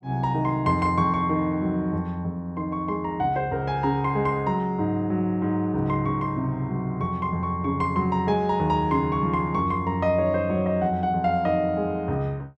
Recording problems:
none

